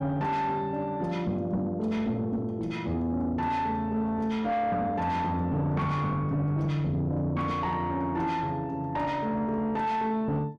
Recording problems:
distortion; soft clipping, signal-to-distortion ratio 10 dB

